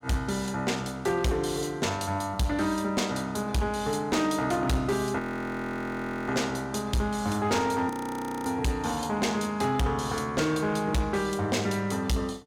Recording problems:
distortion; hard clipping, signal-to-distortion ratio 11 dB
audio freezing; at 5 s for 1 s and at 8 s for 0.5 s

